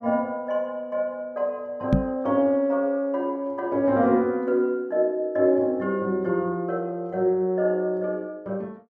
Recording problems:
knock on the microphone; at 2 s; peak +7 dB vs average level

